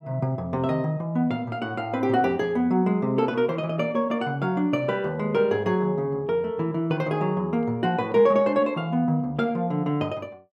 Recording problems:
none

